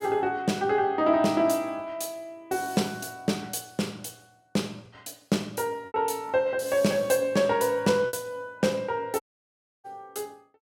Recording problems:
lost packets; 1.6% of the sound replaced, filled with repeated pitch periods
dropout; at 9 s for 0.5 s

